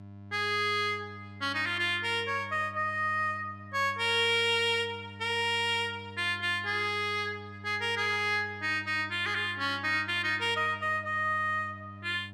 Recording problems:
electrical hum; 50 Hz, harmonics up to 1 kHz, SNR 18 dB

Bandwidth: 14.5 kHz